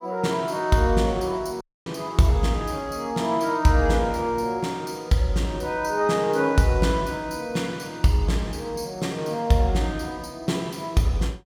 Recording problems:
dropout; at 1.5 s

